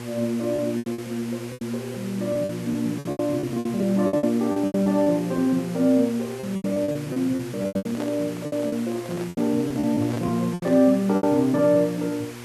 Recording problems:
mains hum; 60 Hz, harmonics up to 960 Hz, SNR 14 dB
background hiss; SNR 17 dB
packet loss; 14% of the sound replaced, filled with repeated pitch periods
handling noise; from 7.5 to 11 s; peak -7 dB vs average level

